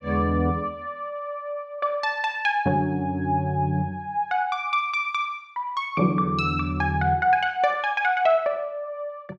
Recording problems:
none

